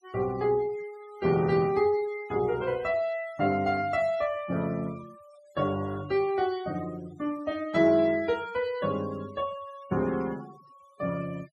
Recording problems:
noise reduction artefacts; signal-to-artefact ratio 23 dB

